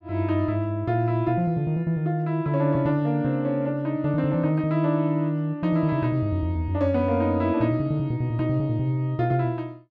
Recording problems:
none

